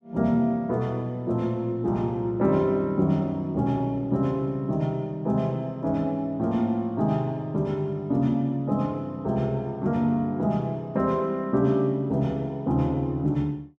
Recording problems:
none

